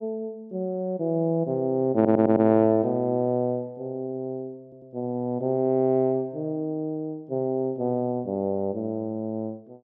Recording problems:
stutter; at 2 s and at 4.5 s

